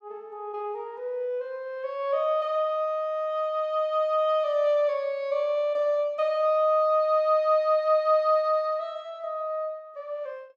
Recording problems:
none

